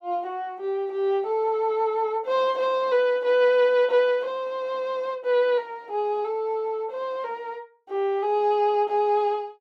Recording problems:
none

